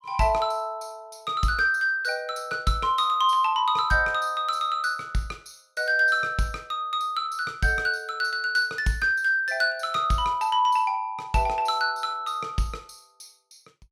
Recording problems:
none

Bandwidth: 16 kHz